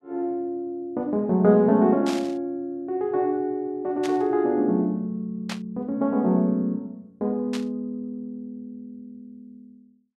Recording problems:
burst of static; 4 times, first at 2 s; peak -5 dB vs average level

